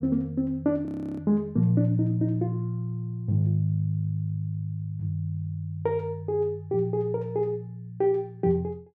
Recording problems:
frozen audio; at 1 s

